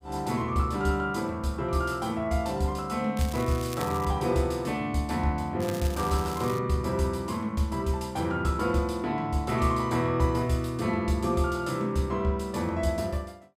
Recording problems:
crackle; at 3 s and at 5.5 s; loose cable, SNR 15 dB

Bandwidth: 15.5 kHz